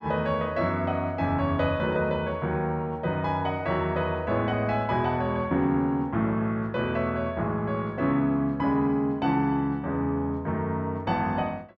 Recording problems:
none

